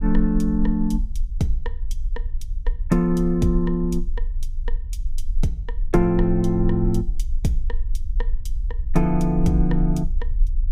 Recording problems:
low-frequency rumble; below 42 Hz, strongest tone 20 Hz, SNR 6 dB

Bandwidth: 15.5 kHz